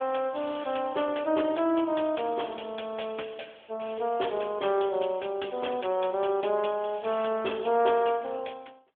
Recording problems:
telephone audio; 260 Hz to 3.4 kHz, AMR-NB

